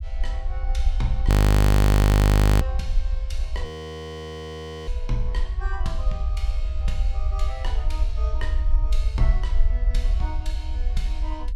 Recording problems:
low-frequency rumble; below 76 Hz, SNR -12 dB
audio freezing; at 1.5 s for 1.5 s and at 3.5 s for 1 s

